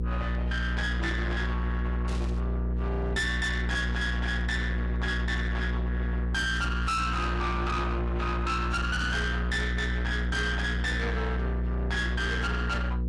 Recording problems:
lossy compression; AAC, log-spectral distance 2 dB, nothing above 11 kHz
distorted audio; soft clipping, signal-to-distortion ratio 8 dB
hum; 60 Hz, harmonics up to 1.3 kHz, SNR 0 dB
burst of static; at 2 s, at 6.5 s and at 9 s; peak -12 dB vs average level

